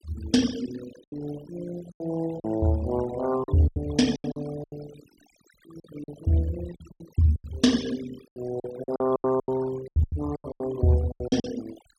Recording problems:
noise reduction artefacts; signal-to-artefact ratio 15 dB
packet loss; 14% of the sound replaced, filled with silence

